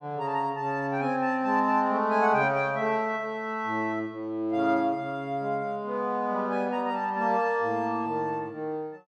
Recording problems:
none

